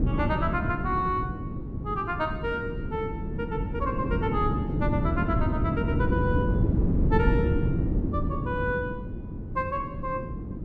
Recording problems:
wind noise; below 250 Hz, SNR -2 dB

